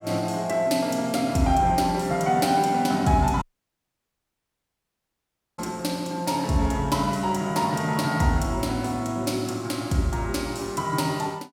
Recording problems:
dropout; at 3.5 s for 2 s

